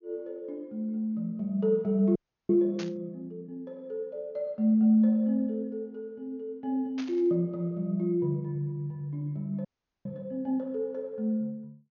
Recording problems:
treble cut off; nothing above 6.8 kHz
audio freezing; at 2 s and at 9.5 s
burst of static; at 3 s and at 7 s; peak -8 dB vs average level

